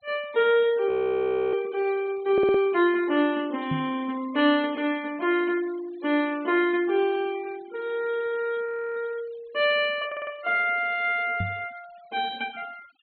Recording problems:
treble missing; nothing above 4.3 kHz
denoising artefacts; signal-to-artefact ratio 24 dB
audio freezing; at 1 s for 0.5 s and at 8.5 s
stutter; at 2.5 s and at 10 s
microphone thump; at 3.5 s and at 11 s; peak -2 dB vs average level

